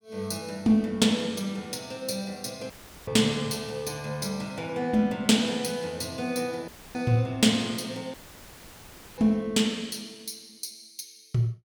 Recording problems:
audio cutting out; at 2.5 s, at 6.5 s and at 8 s for 1 s; filled with static

